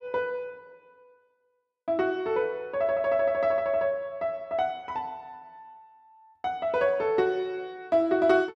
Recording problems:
none

